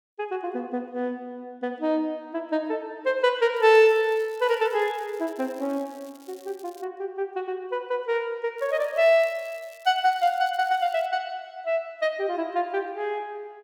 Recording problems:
crackle; from 3.5 to 7 s and from 8.5 to 11 s; loose cable, SNR 27 dB

